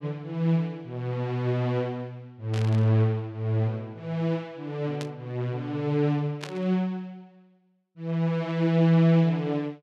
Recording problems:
static burst; at 2.5 s, at 5 s and at 6.5 s; peak -6 dB vs average level

